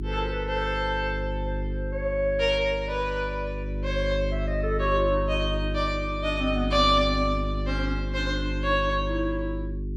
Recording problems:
electrical hum; 50 Hz, harmonics up to 400 Hz, SNR 4 dB

